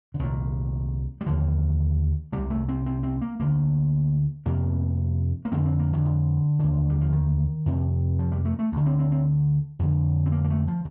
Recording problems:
none

